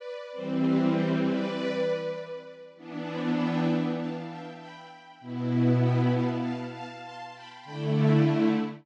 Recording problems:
none

